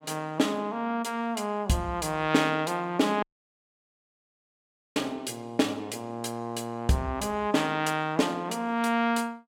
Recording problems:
audio cutting out; at 3 s for 1.5 s

